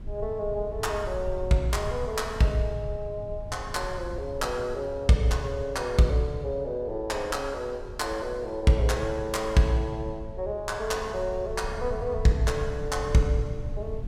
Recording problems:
wind noise; below 94 Hz, SNR 12 dB

